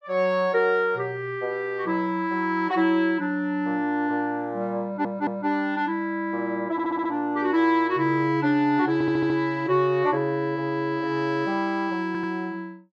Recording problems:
audio stuttering; 4 times, first at 5 s

